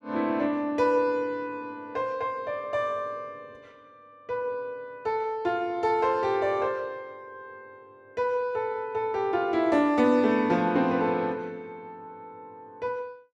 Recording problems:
none

